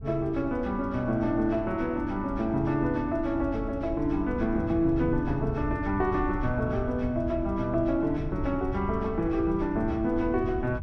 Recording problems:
wind on the microphone; below 100 Hz, SNR 10 dB

